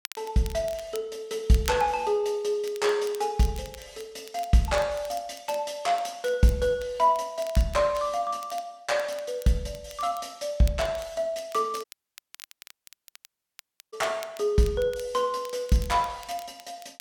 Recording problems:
crackling; vinyl, SNR 20 dB
dropout; at 12 s for 2 s

